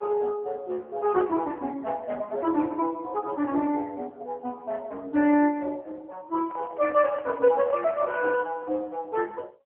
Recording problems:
phone line; 240 Hz to 3.2 kHz, AMR-NB
microphone handling noise; from 6.5 to 8.5 s; peak -10 dB vs average level

